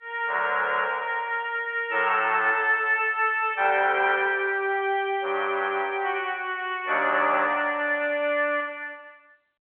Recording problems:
telephone audio; 320 Hz to 3.5 kHz, G.711

